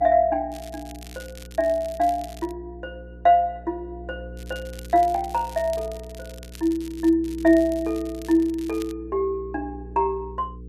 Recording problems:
hum; 60 Hz, harmonics up to 480 Hz, SNR 17 dB
crackle; from 0.5 to 2.5 s, from 4.5 to 7 s and from 7 to 9 s; loose cable, SNR 22 dB

